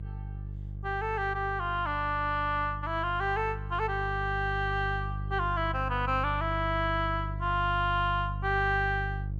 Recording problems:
hum; 50 Hz, harmonics up to 350 Hz, SNR 7 dB

